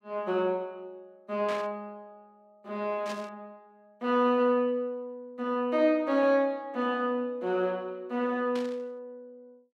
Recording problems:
static burst; at 1.5 s, at 3 s and at 8.5 s; peak -7 dB vs average level

